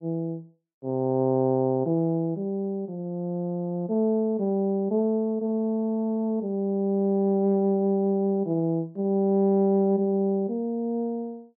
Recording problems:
none

